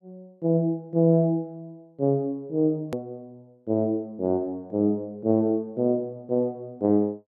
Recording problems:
edit click; at 3 s

